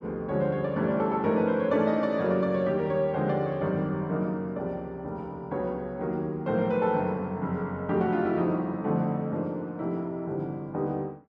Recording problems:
none

